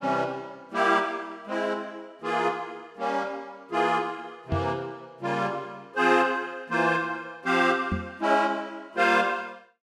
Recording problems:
microphone thump; at 4.5 s and at 8 s; peak +1 dB vs average level

